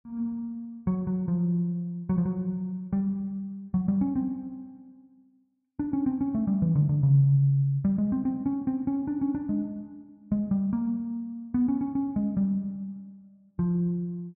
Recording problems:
none

